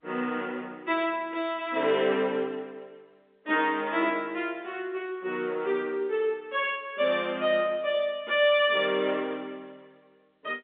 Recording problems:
telephone audio; 240 Hz to 3.6 kHz, G.711

